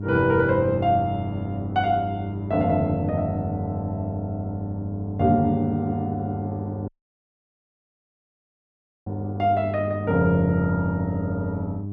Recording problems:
hum; 50 Hz, harmonics up to 400 Hz, SNR 7 dB
dropout; at 7 s for 2 s

